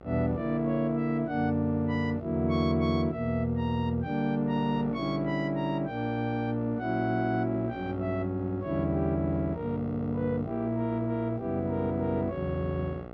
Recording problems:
hum; 60 Hz, harmonics up to 2.1 kHz, SNR 15 dB

